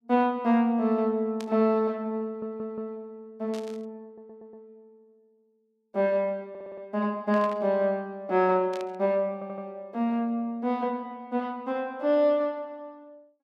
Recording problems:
static burst; 4 times, first at 1.5 s; peak -11 dB vs average level
stutter; 4 times, first at 2.5 s

